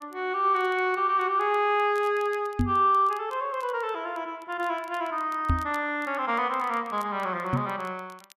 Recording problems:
crackling; vinyl, SNR 29 dB
microphone bump; at 2.5 s, at 5.5 s and at 7.5 s; peak +4 dB vs average level

